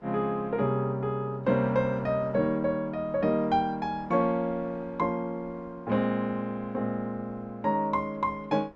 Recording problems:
wind on the microphone; below 830 Hz, SNR 24 dB

